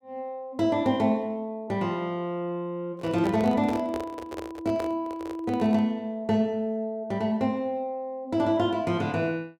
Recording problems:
handling noise; from 3 to 6 s; peak -3 dB vs average level

